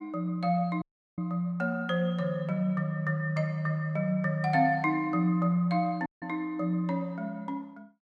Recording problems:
dropout; at 1 s and at 6 s

